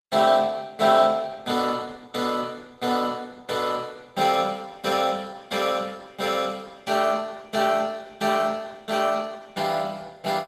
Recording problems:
lossy compression; Opus, log-spectral distance 5 dB, nothing above 15.1 kHz

